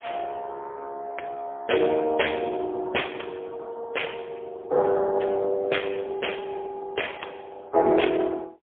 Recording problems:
telephone audio; 320 Hz to 3.3 kHz, AMR-NB, then MP3

